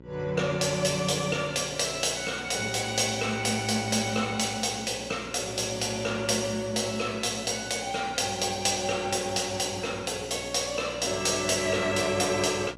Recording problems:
electrical hum; 60 Hz, harmonics up to 1 kHz, SNR 20 dB

